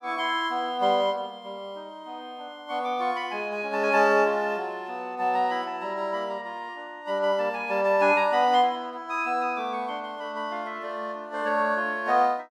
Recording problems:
none

